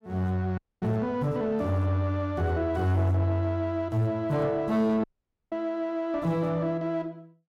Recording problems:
distortion; soft clipping, signal-to-distortion ratio 11 dB
dropout; at 0.5 s and at 5 s

